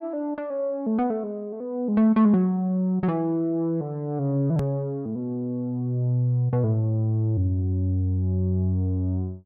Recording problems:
treble cut off; nothing above 5.5 kHz
edit click; at 4.5 s

